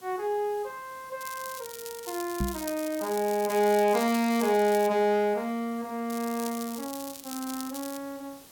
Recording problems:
background hiss; SNR 23 dB
crackle; from 1 to 5 s and from 6 to 8 s; loose cable, SNR 12 dB
knock on the microphone; at 2.5 s; peak +2 dB vs average level

